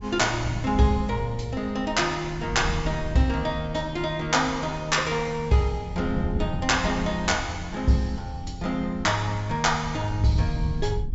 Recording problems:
low-pass filter; nothing above 8 kHz
wind noise; below 120 Hz, SNR 10 dB

